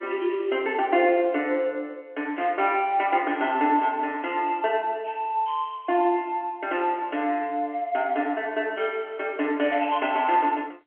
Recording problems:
phone line; 260 Hz to 3.3 kHz, G.711

